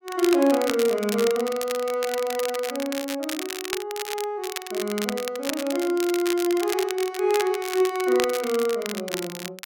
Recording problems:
crackle; vinyl, SNR 8 dB

